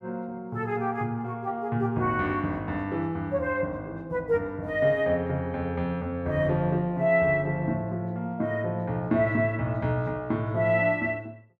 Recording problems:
none

